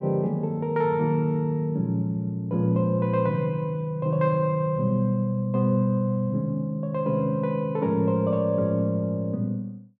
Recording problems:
none

